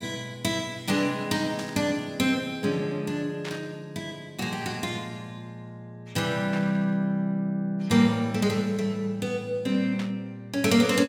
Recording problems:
static burst; 4 times, first at 1.5 s; peak -6 dB vs average level

